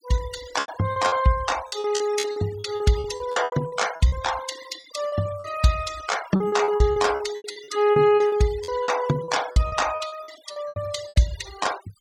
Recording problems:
denoising artefacts; signal-to-artefact ratio 14 dB
packet loss; 16% of the sound replaced, filled with repeated pitch periods

